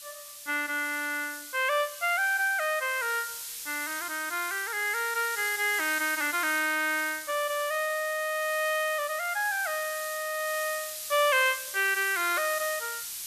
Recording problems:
background hiss; SNR 9 dB

